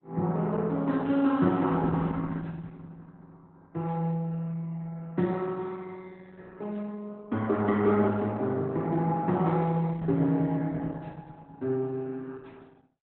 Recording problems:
lossy codec; Opus, log-spectral distance 3 dB, nothing above 3.8 kHz

